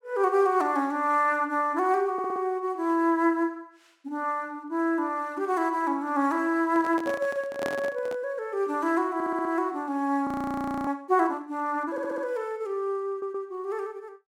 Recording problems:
stutter; 4 times, first at 2 s
microphone handling noise; from 6.5 to 8 s; peak -2 dB vs average level
frozen audio; at 10 s for 0.5 s

